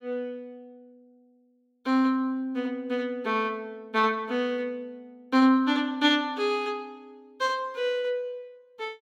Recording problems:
none

